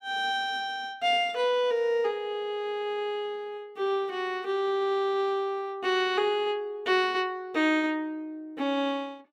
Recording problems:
none

